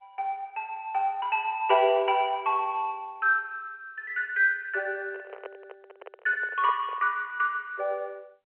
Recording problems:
telephone audio; 300 Hz to 3.2 kHz, G.711
microphone handling noise; from 5 to 7 s; peak -9 dB vs average level

